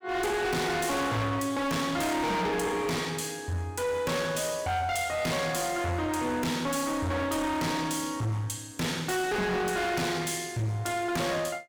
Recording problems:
distortion; hard clipping, uneven, signal-to-distortion ratio 6 dB

